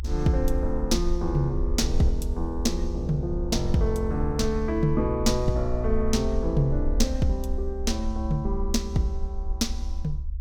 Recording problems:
rumble; below 66 Hz, SNR 4 dB

